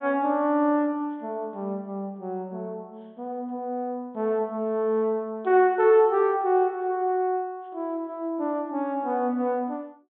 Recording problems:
treble cut off; nothing above 4 kHz

